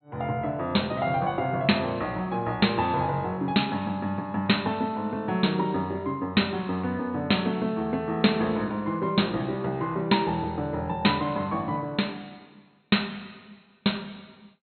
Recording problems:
treble missing; nothing above 4.2 kHz

